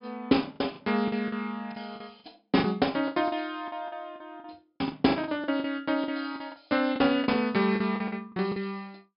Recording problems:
treble missing; nothing above 5.5 kHz
lost packets; 14% of the sound replaced, filled with the last packet

